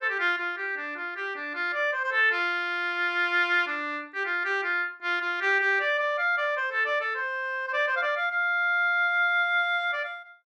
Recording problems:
none

